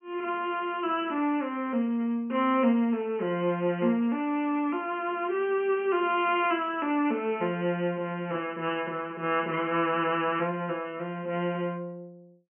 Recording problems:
treble missing; nothing above 3.1 kHz

